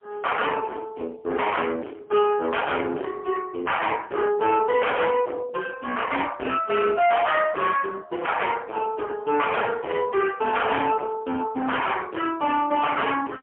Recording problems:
phone line; 280 Hz to 3.3 kHz, AMR-NB, then MP3
distorted audio; soft clipping, signal-to-distortion ratio 7 dB

